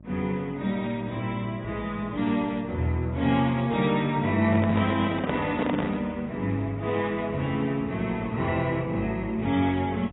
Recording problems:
lossy compression; AAC, log-spectral distance 2 dB, nothing above 3.8 kHz
hum; 50 Hz, harmonics up to 650 Hz, SNR 22 dB
microphone handling noise; from 4.5 to 6 s; peak +2 dB vs average level

